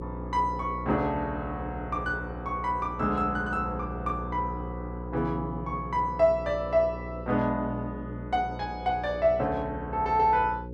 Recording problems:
electrical hum; 60 Hz, harmonics up to 540 Hz, SNR 10 dB

